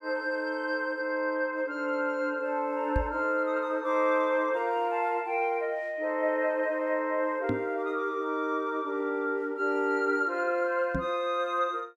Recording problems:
microphone bump; at 3 s, at 7.5 s and at 11 s; peak +2 dB vs average level

